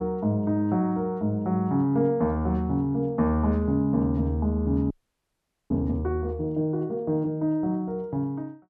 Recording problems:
frozen audio; at 5 s for 1 s

